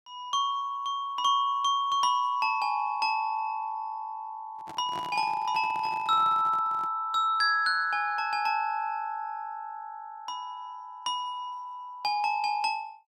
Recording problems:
handling noise; from 4.5 to 7 s; peak -8 dB vs average level

